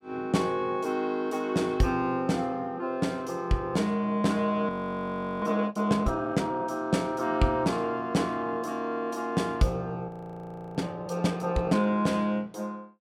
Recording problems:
audio freezing; at 4.5 s for 0.5 s and at 10 s for 0.5 s

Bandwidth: 16 kHz